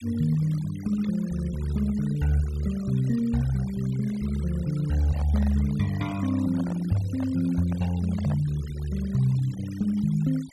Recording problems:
denoising artefacts; signal-to-artefact ratio 21 dB
microphone handling noise; from 5 to 8.5 s; peak -9 dB vs average level

